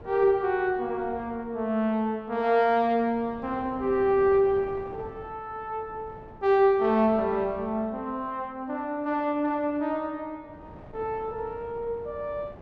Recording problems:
wind on the microphone; below 590 Hz, SNR 21 dB

